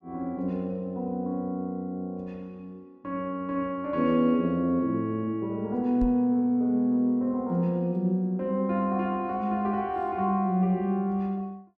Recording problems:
knock on the microphone; at 6 s; peak -2 dB vs average level

